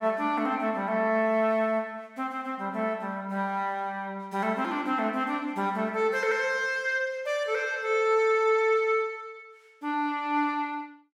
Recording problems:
none

